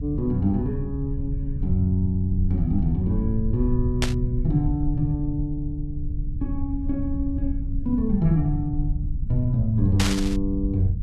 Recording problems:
rumble; below 84 Hz, SNR 4 dB
burst of static; at 4 s and at 10 s; peak +4 dB vs average level

